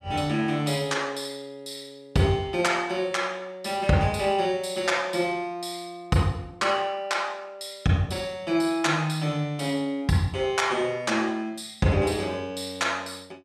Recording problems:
none

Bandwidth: 14.5 kHz